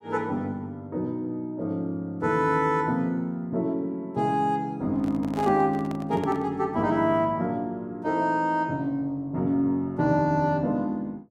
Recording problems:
microphone handling noise; from 5 to 6.5 s; peak -7 dB vs average level

